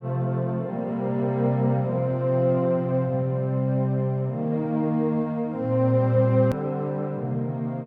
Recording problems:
hard cut with a click; at 6.5 s

